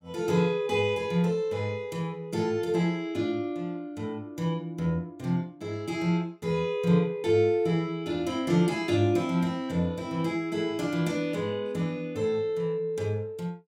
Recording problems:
none

